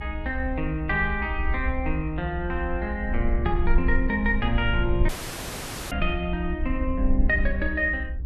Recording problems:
rumble; below 66 Hz, strongest tone 20 Hz, SNR 3 dB
dropout; at 5 s for 1 s

